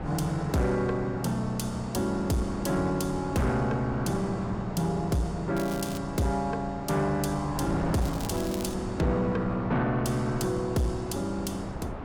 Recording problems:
distorted audio; soft clipping, signal-to-distortion ratio 12 dB
wind on the microphone; below 740 Hz, SNR 9 dB
crackle; at 5.5 s and at 8 s; loose cable, SNR 15 dB

